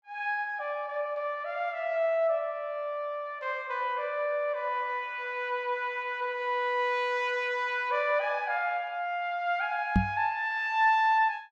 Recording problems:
knock on the microphone; at 10 s; peak +8 dB vs average level

